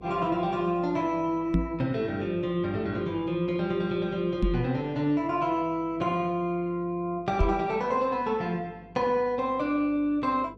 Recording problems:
hum; 50 Hz, harmonics up to 500 Hz, SNR 23 dB
microphone thump; at 1.5 s, at 4.5 s and at 7.5 s; peak +6 dB vs average level

